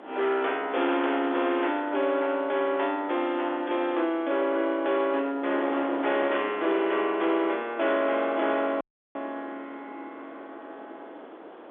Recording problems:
phone line; 240 Hz to 3.6 kHz, G.711
distorted audio; hard clipping, uneven, signal-to-distortion ratio 13 dB
wind noise; below 980 Hz, SNR 16 dB
dropout; at 9 s

